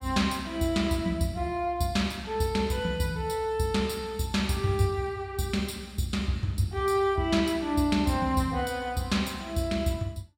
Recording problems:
none

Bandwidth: 16 kHz